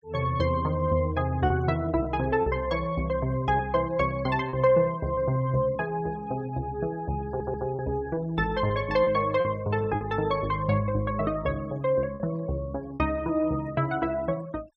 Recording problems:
denoising artefacts; signal-to-artefact ratio 26 dB
lost packets; 3% of the sound replaced, filled with repeated pitch periods
audio stuttering; at 7.5 s

